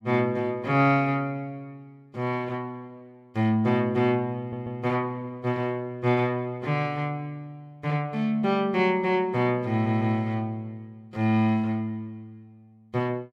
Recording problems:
stutter; at 4.5 s and at 9.5 s

